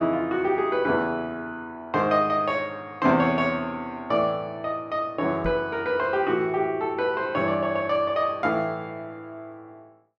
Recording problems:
microphone bump; at 5.5 s; peak -3 dB vs average level

